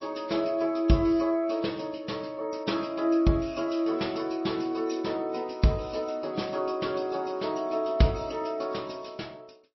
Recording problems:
lossy compression; MP3, log-spectral distance 5 dB, nothing above 5.7 kHz

